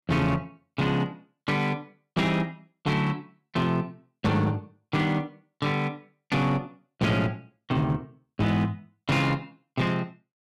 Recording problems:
distorted audio; hard clipping, uneven, signal-to-distortion ratio 11 dB

